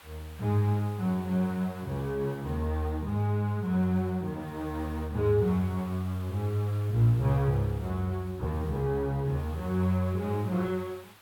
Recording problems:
background hiss; SNR 23 dB

